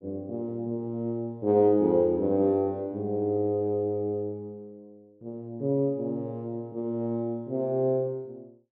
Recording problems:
none

